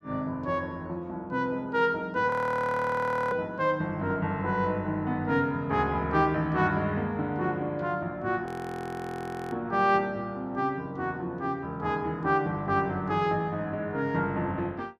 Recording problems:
audio freezing; at 2.5 s for 1 s and at 8.5 s for 1 s

